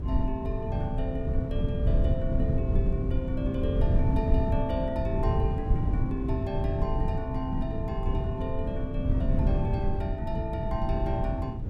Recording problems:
wind noise; below 130 Hz, SNR -5 dB

